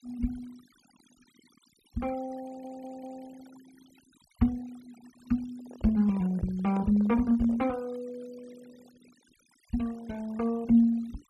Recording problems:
noise reduction artefacts; signal-to-artefact ratio 25 dB
stutter; at 2.5 s
microphone handling noise; from 5.5 to 7.5 s; peak -10 dB vs average level

